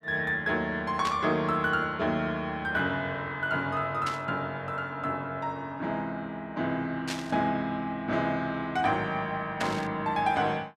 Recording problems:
burst of static; 4 times, first at 1 s; peak 0 dB vs average level

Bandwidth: 13.5 kHz